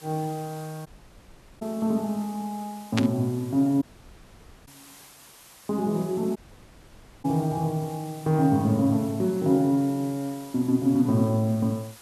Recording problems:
background hiss; slope -1 dB per octave, SNR 22 dB
dropout; at 1 s for 1 s, at 4 s for 1 s and at 6.5 s for 1 s
burst of static; at 3 s; peak +2 dB vs average level

